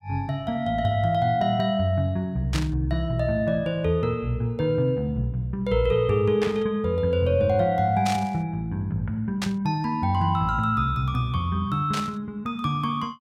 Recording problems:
burst of static; 5 times, first at 2.5 s; peak -1 dB vs average level

